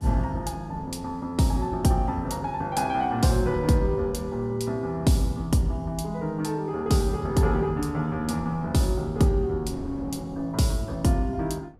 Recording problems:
wind on the microphone; below 290 Hz, SNR 20 dB

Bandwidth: 14.5 kHz